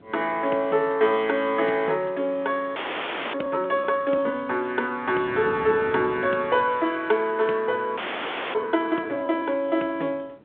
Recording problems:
phone line; 280 Hz to 3.7 kHz, G.726
wind on the microphone; below 500 Hz, SNR 19 dB
frozen audio; at 3 s for 0.5 s and at 8 s for 0.5 s

